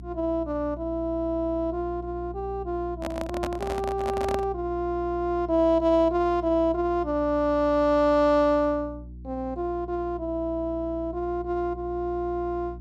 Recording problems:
hum; 60 Hz, harmonics up to 360 Hz, SNR 15 dB
handling noise; from 3 to 4.5 s; peak -1 dB vs average level

